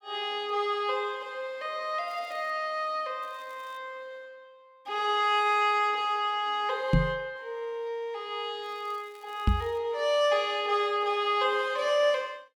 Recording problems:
crackling; at 2 s, at 3 s and from 8.5 to 10 s; loose cable, SNR 30 dB
microphone bump; at 7 s and at 9.5 s; peak +8 dB vs average level

